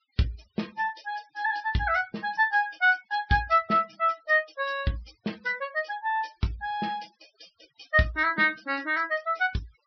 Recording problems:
treble cut off; nothing above 5.5 kHz
noise reduction artefacts; signal-to-artefact ratio 26 dB

